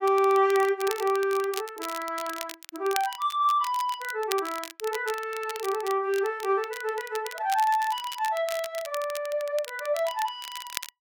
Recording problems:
crackle; vinyl, SNR 13 dB

